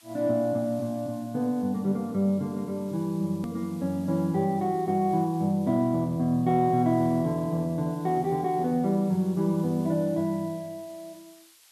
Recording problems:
hiss; slope +3 dB per octave, SNR 27 dB
click at an edit; at 3.5 s

